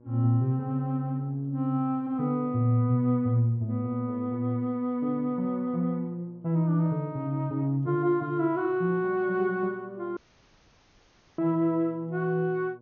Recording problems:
low-pass filter; nothing above 6.7 kHz
hum; 60 Hz, harmonics up to 1.1 kHz, SNR 27 dB
dropout; at 10 s for 1 s

